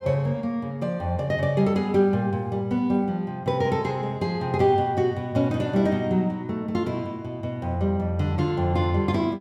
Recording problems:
none

